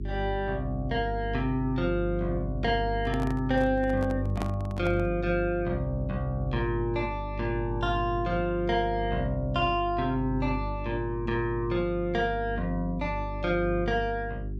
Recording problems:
hum; 50 Hz, harmonics up to 400 Hz, SNR 7 dB
handling noise; from 3 to 5 s; peak -2 dB vs average level

